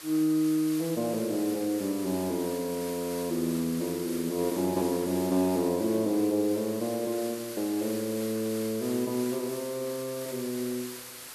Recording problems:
hiss; slope +1 dB per octave, SNR 11 dB

